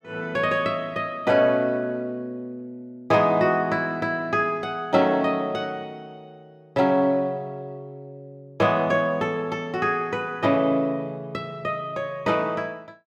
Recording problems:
none

